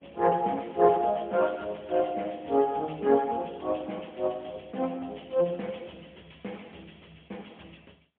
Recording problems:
phone line; 190 Hz to 3.3 kHz, AMR-NB, then MP3

